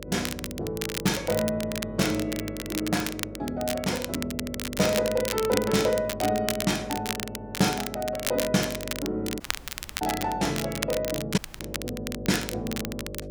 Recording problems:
electrical hum; 50 Hz, harmonics up to 600 Hz, SNR 12 dB
crackle; vinyl, SNR 6 dB
dropout; at 9.5 s for 0.5 s and at 11 s

